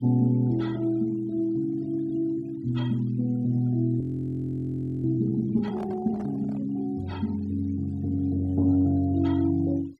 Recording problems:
noise reduction artefacts; signal-to-artefact ratio 27 dB
audio freezing; at 4 s for 1 s
microphone handling noise; at 5.5 s; peak -11 dB vs average level

